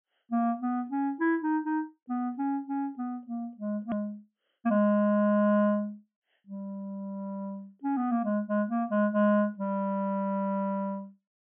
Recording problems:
treble missing; nothing above 3.4 kHz
edit click; at 4 s

